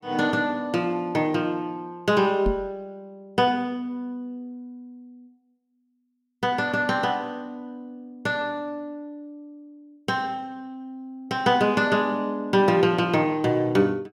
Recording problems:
microphone thump; at 2.5 s; peak +1 dB vs average level

